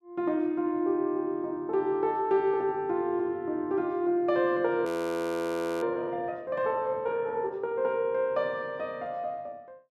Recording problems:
frozen audio; at 5 s for 1 s

